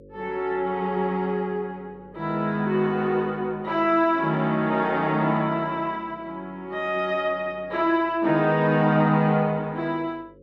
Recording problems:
electrical hum; 50 Hz, harmonics up to 550 Hz, SNR 26 dB

